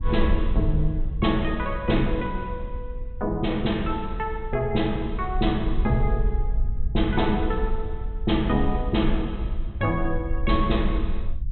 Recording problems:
treble missing; nothing above 3.9 kHz
rumble; below 56 Hz, SNR 4 dB

